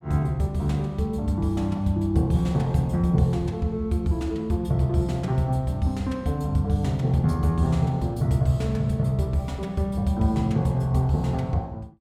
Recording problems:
none

